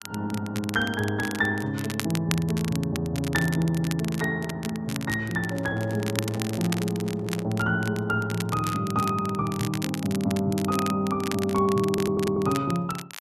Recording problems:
crackle; vinyl, SNR 11 dB
microphone handling noise; from 5.5 to 7.5 s; peak -11 dB vs average level
stutter; at 12 s

